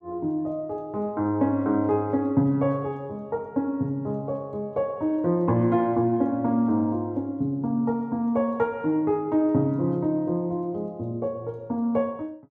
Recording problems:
none

